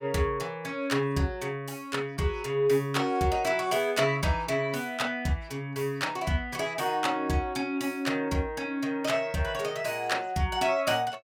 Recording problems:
none

